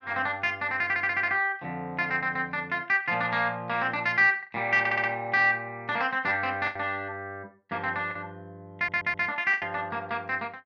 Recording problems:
lost packets; 3% of the sound replaced, filled with the last packet
stutter; at 1 s, at 5 s and at 9 s

